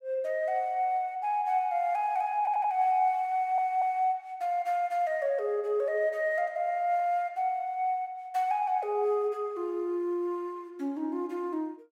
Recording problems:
stutter; at 2.5 s and at 3.5 s

